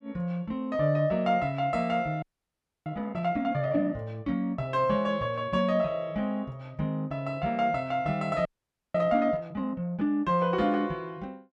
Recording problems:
frozen audio; at 2 s for 0.5 s and at 8.5 s

